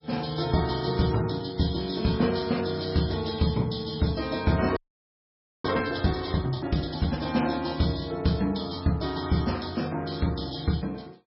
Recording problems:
lossy codec; MP3, log-spectral distance 8 dB, nothing above 5.3 kHz
frozen audio; at 5 s for 1 s

